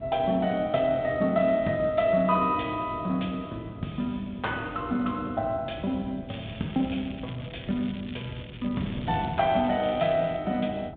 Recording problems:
telephone audio; 130 Hz to 3.7 kHz, G.726
wind noise; below 260 Hz, SNR 14 dB
crackle; from 6.5 to 10 s; loose cable, SNR 19 dB

